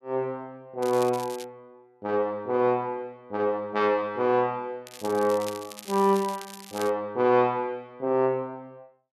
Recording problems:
crackle; at 1 s and from 5 to 7 s; loose cable, SNR 16 dB

